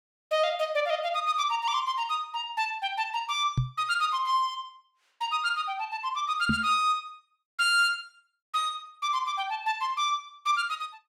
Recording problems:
microphone bump; at 3.5 s and at 6.5 s; peak +4 dB vs average level

